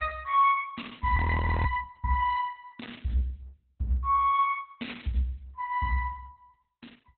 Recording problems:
lossy compression; Opus, log-spectral distance 3 dB, nothing above 4 kHz
audio freezing; at 1 s

